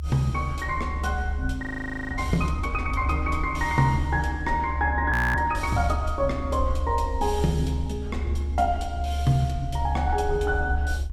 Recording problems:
rumble; below 74 Hz, strongest tone 72 Hz, SNR 3 dB
frozen audio; at 1.5 s and at 5 s

